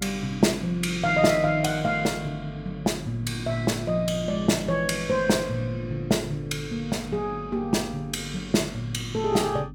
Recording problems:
electrical hum; 50 Hz, harmonics up to 300 Hz, SNR 16 dB

